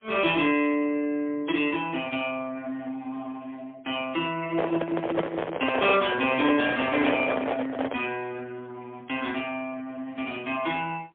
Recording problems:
telephone audio; 240 Hz to 3.4 kHz, AMR-NB, then MP3
handling noise; from 4.5 to 8 s; peak +5 dB vs average level

